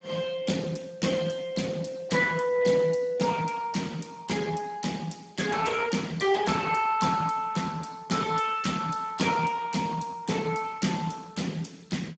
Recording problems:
codec artefacts; Speex, log-spectral distance 5 dB, nothing above 7.6 kHz

